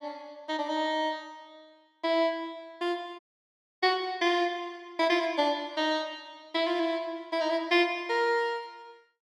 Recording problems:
dropout; at 3 s for 0.5 s

